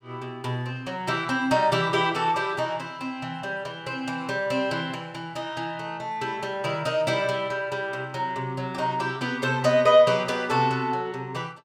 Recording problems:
none

